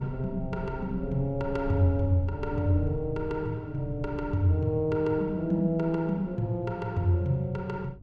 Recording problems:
low-frequency rumble; below 96 Hz, SNR 15 dB

